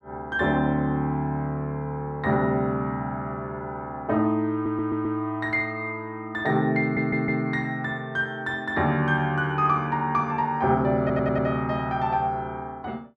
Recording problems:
stutter; at 4.5 s, at 7 s and at 11 s

